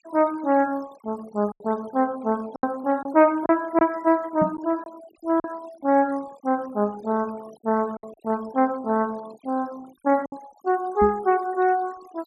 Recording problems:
noise reduction artefacts; signal-to-artefact ratio 22 dB
lost packets; 4% of the sound replaced, filled with silence
microphone thump; at 4.5 s and at 11 s; peak +1 dB vs average level

